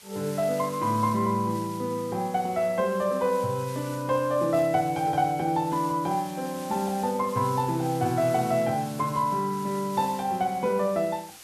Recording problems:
hiss; slope +1 dB per octave, SNR 18 dB

